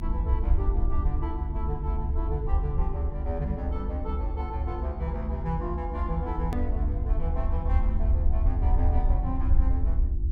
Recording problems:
electrical hum; 50 Hz, harmonics up to 350 Hz, SNR 8 dB
rumble; below 70 Hz, SNR -7 dB
click at an edit; at 6.5 s

